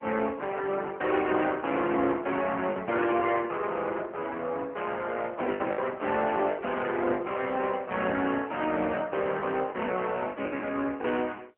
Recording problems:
telephone audio; 260 Hz to 3.1 kHz, AMR-NB
packet loss; 5% of the sound replaced, filled with the last packet

